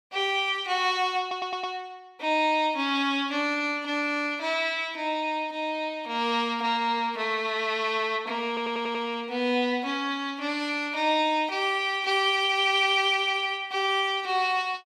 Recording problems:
audio stuttering; at 1 s and at 8.5 s

